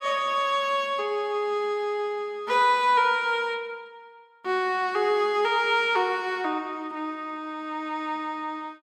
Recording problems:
none

